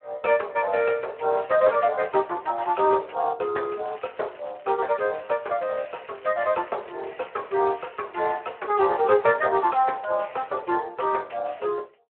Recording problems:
phone line; 340 Hz to 3.3 kHz, Speex
crackle; from 3.5 to 5.5 s and from 6 to 7 s; loose cable, SNR 29 dB

